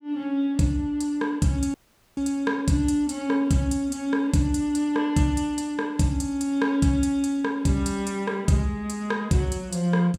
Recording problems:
dropout; at 1.5 s

